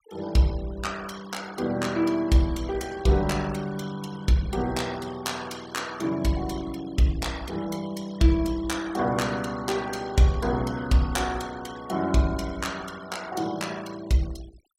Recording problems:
noise reduction artefacts; signal-to-artefact ratio 19 dB

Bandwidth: 16 kHz